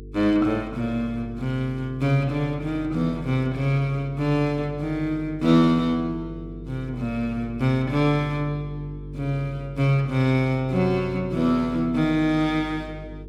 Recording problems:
electrical hum; 50 Hz, harmonics up to 450 Hz, SNR 16 dB

